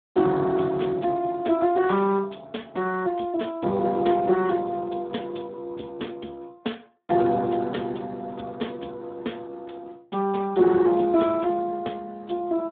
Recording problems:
telephone audio; 240 Hz to 3.6 kHz, Speex

